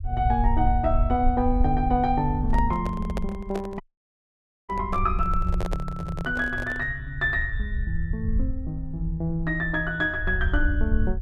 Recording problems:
low-frequency rumble; below 68 Hz, SNR 3 dB
handling noise; from 2.5 to 7 s; peak -2 dB vs average level
dropout; at 4 s for 1 s

